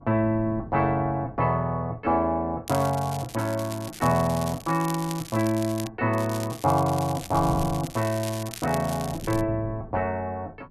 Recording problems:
wind on the microphone; below 210 Hz, SNR 15 dB
crackle; from 2.5 to 6 s and from 6 to 9.5 s; loose cable, SNR 14 dB

